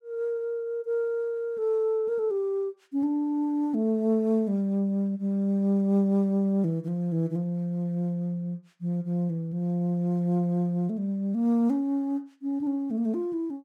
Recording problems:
none

